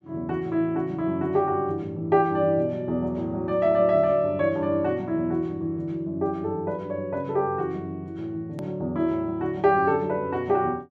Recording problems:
hard cut with a click; at 8.5 s

